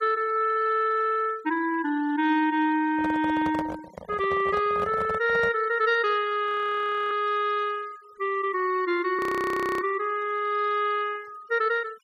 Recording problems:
denoising artefacts; signal-to-artefact ratio 23 dB
microphone handling noise; from 3 to 5.5 s; peak -5 dB vs average level
frozen audio; at 6.5 s for 0.5 s and at 9 s for 0.5 s

